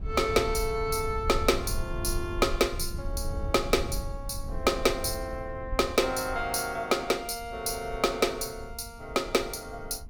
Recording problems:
rumble; below 82 Hz, SNR 10 dB

